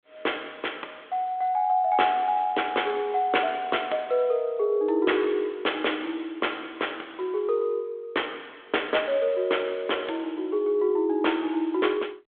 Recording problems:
phone line; 340 Hz to 3.5 kHz, G.726

